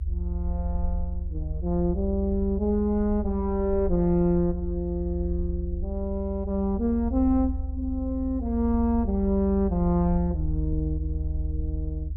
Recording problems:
rumble; below 74 Hz, SNR 5 dB

